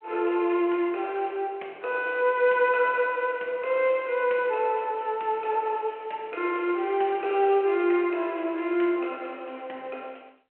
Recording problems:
telephone audio; 300 Hz to 3.2 kHz, G.726

